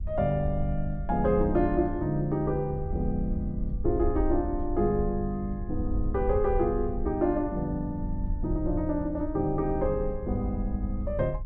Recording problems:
wind on the microphone; below 68 Hz, SNR 7 dB

